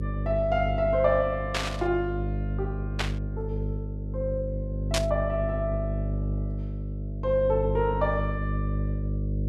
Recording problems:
hum; 50 Hz, harmonics up to 600 Hz, SNR 3 dB
static burst; at 1.5 s, at 3 s and at 5 s; peak +4 dB vs average level

